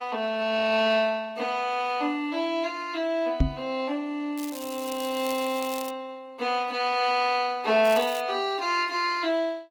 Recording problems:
lossy codec; Opus, log-spectral distance 3 dB
microphone thump; at 3.5 s; peak +7 dB vs average level
crackle; from 4.5 to 6 s and at 8 s; loose cable, SNR 15 dB

